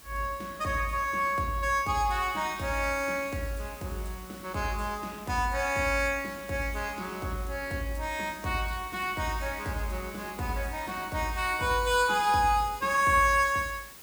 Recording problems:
background hiss; slope -1 dB per octave, SNR 18 dB

